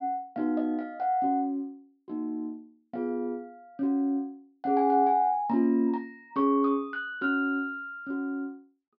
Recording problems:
low-pass filter; nothing above 5.5 kHz

